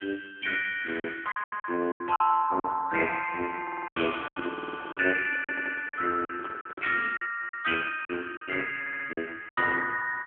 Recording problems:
phone line; 280 Hz to 2.9 kHz, AMR-NB
packet loss; 11% of the sound replaced, filled with silence
microphone handling noise; from 3.5 to 7 s; peak -8 dB vs average level
audio stuttering; 4 times, first at 3.5 s

